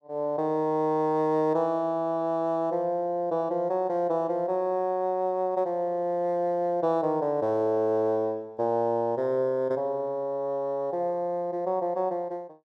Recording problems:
none

